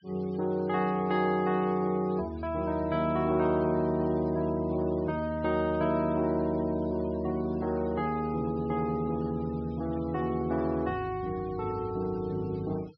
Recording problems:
low-pass filter; nothing above 5.5 kHz
denoising artefacts; signal-to-artefact ratio 24 dB

